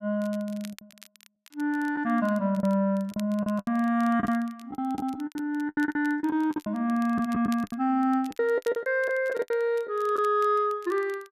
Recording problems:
crackle; vinyl, SNR 25 dB
packet loss; 13% of the sound replaced, filled with the last packet

